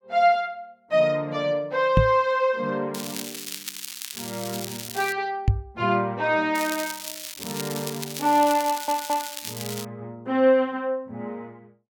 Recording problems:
microphone thump; at 2 s and at 5.5 s; peak +7 dB vs average level
crackling; from 3 to 5 s and from 6.5 to 10 s; loose cable, SNR 9 dB
audio stuttering; at 8.5 s

